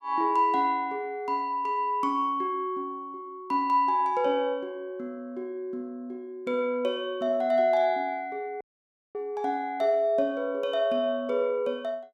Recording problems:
audio cutting out; at 8.5 s for 0.5 s

